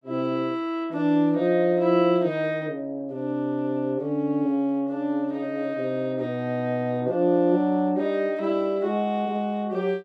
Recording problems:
none

